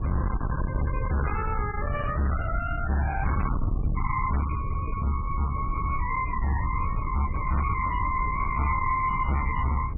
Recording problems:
lossy compression; MP3, log-spectral distance 4 dB, nothing above 2.9 kHz
distorted audio; hard clipping, uneven, signal-to-distortion ratio 6 dB
hum; 60 Hz, harmonics up to 1.2 kHz, SNR 22 dB
wind on the microphone; below 130 Hz, SNR 3 dB

